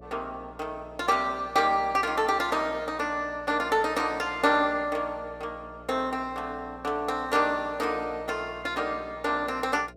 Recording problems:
electrical hum; 60 Hz, harmonics up to 660 Hz, SNR 22 dB

